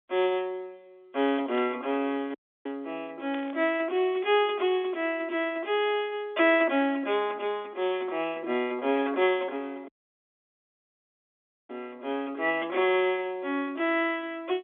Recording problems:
telephone audio; 260 Hz to 3.6 kHz, G.711
static burst; at 1.5 s and at 3.5 s; peak -8 dB vs average level
audio cutting out; at 2.5 s and at 10 s for 2 s

